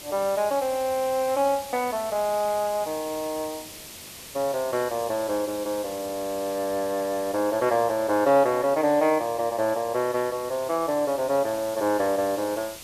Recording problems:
hiss; SNR 14 dB

